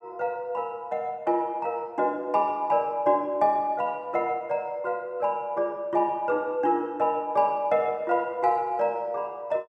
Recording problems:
none

